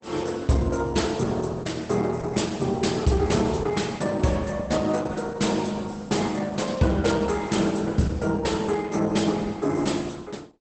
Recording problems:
lossy compression; Opus, log-spectral distance 5 dB, nothing above 8.2 kHz

